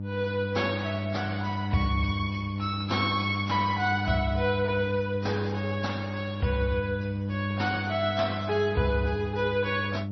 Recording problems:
codec artefacts; MP3, then AAC, log-spectral distance 3 dB, nothing above 5.8 kHz
electrical hum; 50 Hz, harmonics up to 600 Hz, SNR 4 dB

